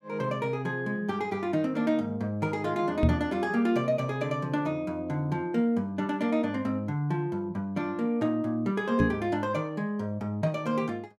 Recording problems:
microphone bump; at 3 s and at 9 s; peak +9 dB vs average level

